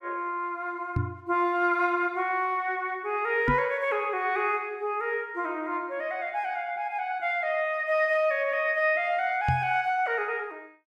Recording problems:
knock on the microphone; at 1 s, at 3.5 s and at 9.5 s; peak +3 dB vs average level

